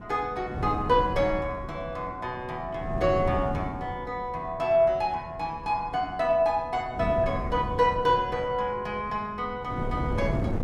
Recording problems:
wind noise; below 270 Hz, SNR 9 dB

